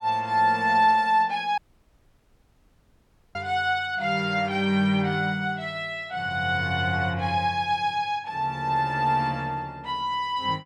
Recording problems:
audio cutting out; at 1.5 s for 2 s

